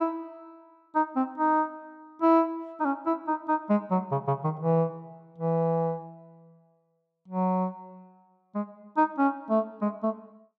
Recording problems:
none

